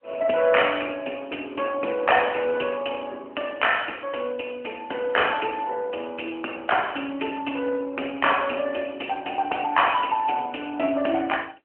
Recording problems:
telephone audio; 220 Hz to 3.1 kHz, AMR-NB

